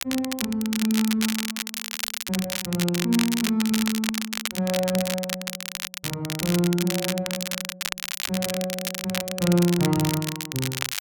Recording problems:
crackling; vinyl, SNR 3 dB

